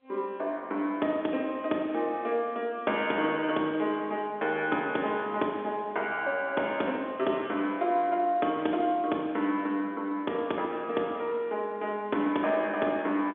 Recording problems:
telephone audio; 260 Hz to 3.7 kHz, G.711

